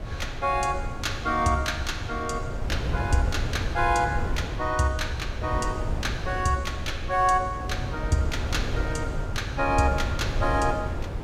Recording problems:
wind noise; below 160 Hz, SNR 4 dB

